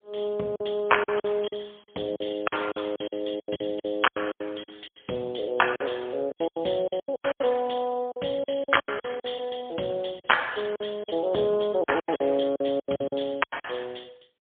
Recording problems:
telephone audio; 280 Hz to 3.4 kHz, AMR-NB, then MP3
packet loss; 16% of the sound replaced, filled with silence

